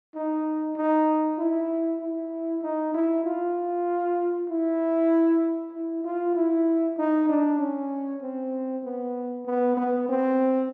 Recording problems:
none

